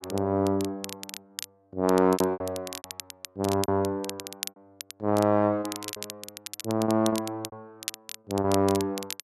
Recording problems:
crackling; vinyl, SNR 12 dB
packet loss; 11% of the sound replaced, filled with repeated pitch periods

